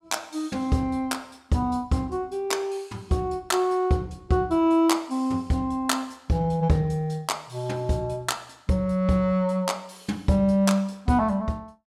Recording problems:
none

